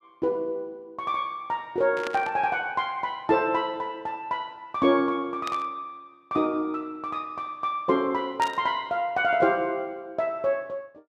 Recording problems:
static burst; at 2 s, at 5.5 s and at 8.5 s; peak -3 dB vs average level

